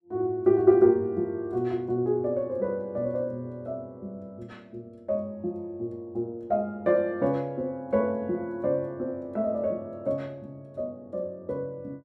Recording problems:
none

